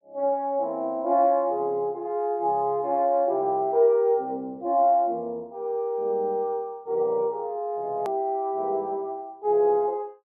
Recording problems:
edit click; at 8 s

